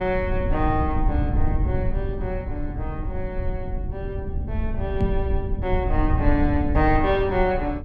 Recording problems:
low-frequency rumble; below 94 Hz, SNR 1 dB
microphone bump; at 5 s; peak +5 dB vs average level

